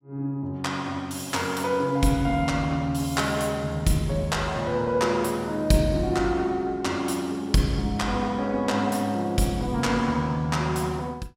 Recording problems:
none

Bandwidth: 16 kHz